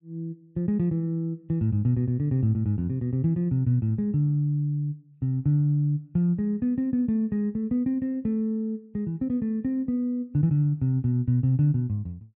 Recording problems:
none

